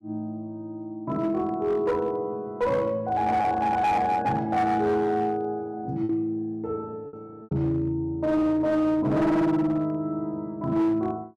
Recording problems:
distortion; hard clipping, signal-to-distortion ratio 11 dB
packet loss; 1.9% of the sound replaced, filled with repeated pitch periods

